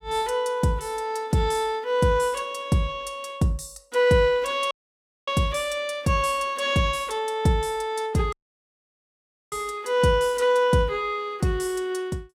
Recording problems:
audio cutting out; at 4.5 s for 0.5 s and at 8.5 s for 1 s

